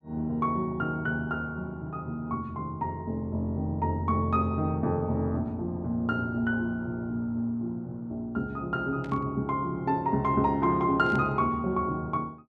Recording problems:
static burst; at 9 s and at 11 s; peak -14 dB vs average level

